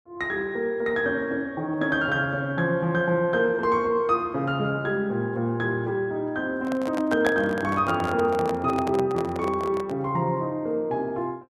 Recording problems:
handling noise; from 6.5 to 10 s; peak +2 dB vs average level

